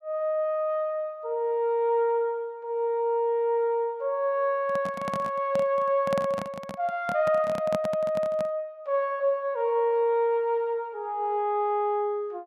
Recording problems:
handling noise; from 4.5 to 8.5 s; peak -1 dB vs average level

